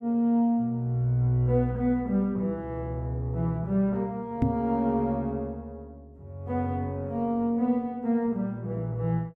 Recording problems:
knock on the microphone; at 4.5 s; peak +6 dB vs average level

